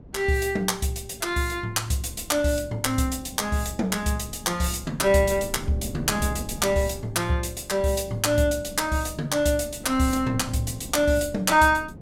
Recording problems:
wind on the microphone; below 250 Hz, SNR 16 dB

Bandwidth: 16.5 kHz